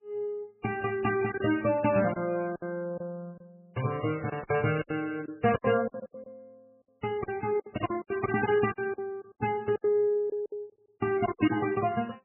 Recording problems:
codec artefacts; MP3, log-spectral distance 3 dB, nothing above 2.9 kHz
packet loss; 12% of the sound replaced, filled with silence

